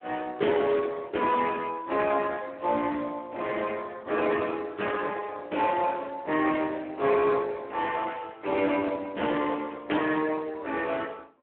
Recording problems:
telephone audio; 240 Hz to 3 kHz, Speex

